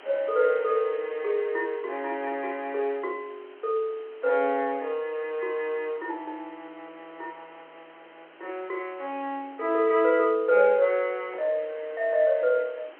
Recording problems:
telephone audio; 280 Hz to 3.3 kHz, G.711
background hiss; SNR 24 dB

